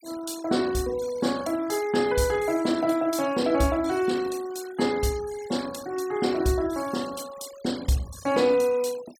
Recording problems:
noise reduction artefacts; signal-to-artefact ratio 18 dB

